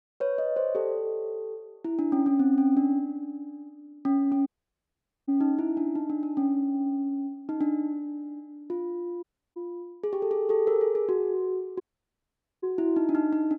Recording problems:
dropout; at 4.5 s for 1 s, at 9 s and at 12 s for 1 s

